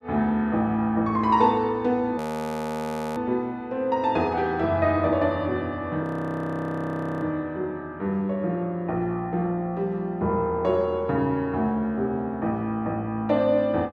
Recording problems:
frozen audio; at 2 s for 1 s and at 6 s for 1 s

